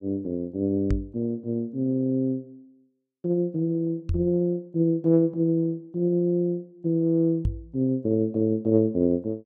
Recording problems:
microphone bump; at 1 s, at 4 s and at 7.5 s; peak +2 dB vs average level

